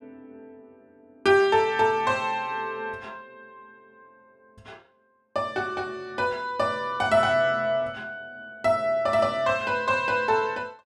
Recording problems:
none

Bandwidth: 13.5 kHz